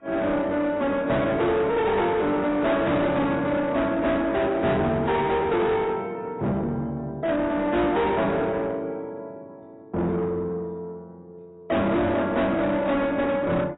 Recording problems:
codec artefacts; AAC, log-spectral distance 2 dB, nothing above 3.8 kHz
distorted audio; soft clipping, signal-to-distortion ratio 7 dB

